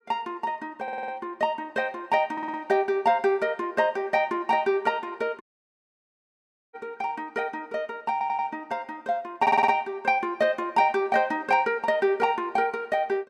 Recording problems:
stutter; 4 times, first at 1 s
audio cutting out; at 5.5 s for 1.5 s

